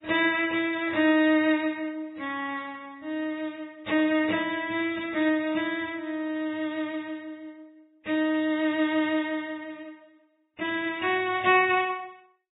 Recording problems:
lossy compression; AAC, then Vorbis, log-spectral distance 3 dB, nothing above 3.8 kHz

